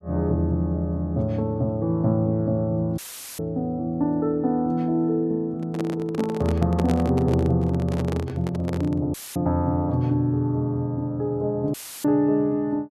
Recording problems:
dropout; at 3 s, at 9 s and at 12 s; filled with static
microphone handling noise; from 5.5 to 9 s; peak -1 dB vs average level

